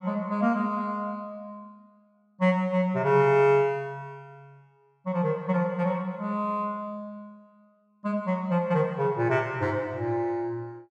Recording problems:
none

